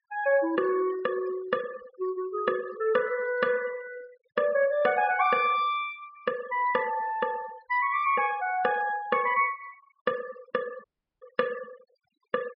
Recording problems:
treble missing; nothing above 5.5 kHz
noise reduction artefacts; signal-to-artefact ratio 19 dB
dropout; at 11 s

